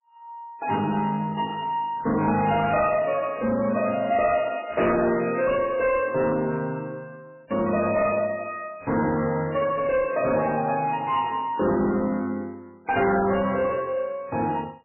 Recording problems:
lossy codec; MP3, log-spectral distance 3 dB, nothing above 2.5 kHz
distorted audio; soft clipping, signal-to-distortion ratio 10 dB

